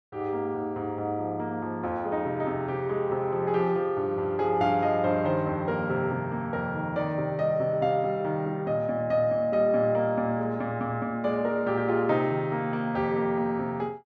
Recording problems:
none

